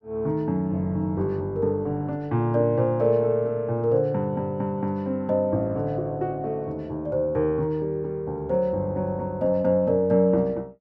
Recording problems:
none

